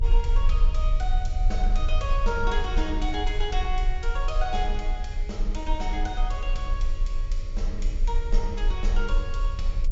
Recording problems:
treble cut off; nothing above 8 kHz
hum; 60 Hz, harmonics up to 600 Hz, SNR 17 dB
rumble; below 36 Hz, strongest tone 22 Hz, SNR -4 dB

